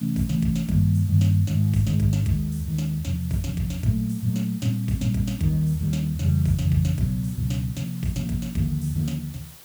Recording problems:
hiss; slope -1 dB per octave, SNR 20 dB

